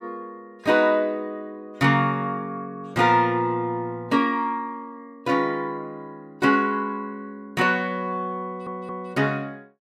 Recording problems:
audio stuttering; at 8.5 s

